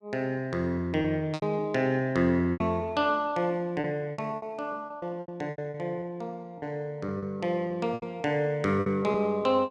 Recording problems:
lost packets; 10% of the sound replaced, filled with repeated pitch periods

